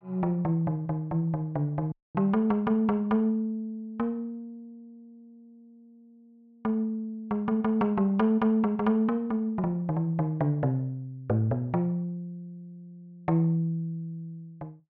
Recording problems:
dropout; at 2 s

